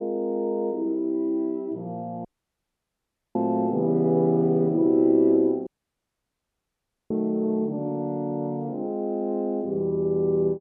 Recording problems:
audio cutting out; at 2.5 s for 1 s and at 5.5 s for 1.5 s

